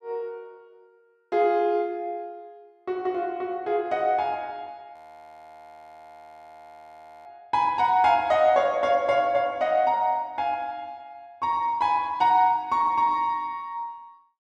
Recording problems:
frozen audio; at 5 s for 2.5 s

